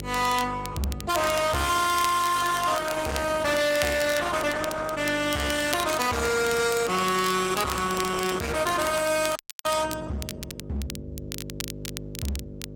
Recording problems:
codec artefacts; Opus, log-spectral distance 4 dB, nothing above 16.5 kHz
distorted audio; hard clipping, signal-to-distortion ratio 6 dB
electrical hum; 50 Hz, harmonics up to 2.1 kHz, SNR 15 dB
crackling; vinyl, SNR 13 dB
frozen audio; at 9.5 s

